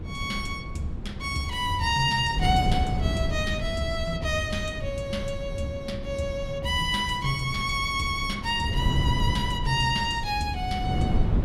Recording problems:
wind noise; below 160 Hz, SNR 4 dB

